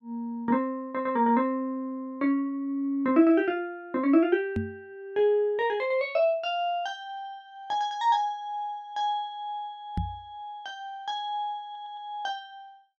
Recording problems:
microphone bump; at 4.5 s and at 10 s; peak +1 dB vs average level
audio stuttering; at 12 s

